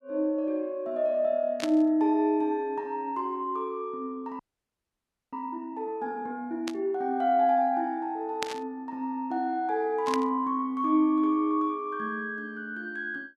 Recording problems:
burst of static; 4 times, first at 1.5 s; peak +1 dB vs average level
frozen audio; at 4.5 s for 1 s

